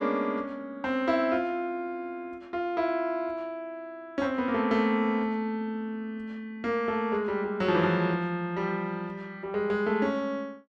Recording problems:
none

